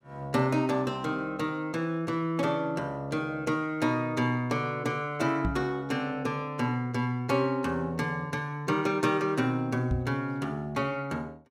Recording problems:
microphone bump; at 5.5 s and at 10 s; peak +2 dB vs average level

